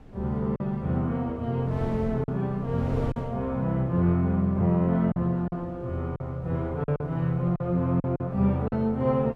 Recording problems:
wind noise; below 340 Hz, SNR 17 dB
lost packets; 5% of the sound replaced, filled with silence

